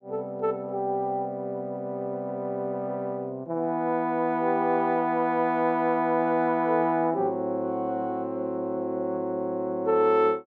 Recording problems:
none

